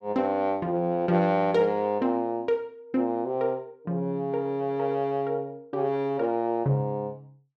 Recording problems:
none

